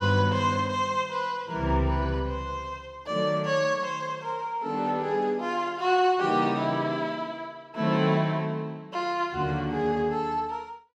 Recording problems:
none

